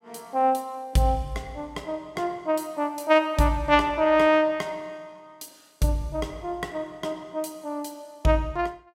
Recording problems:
none

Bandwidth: 16 kHz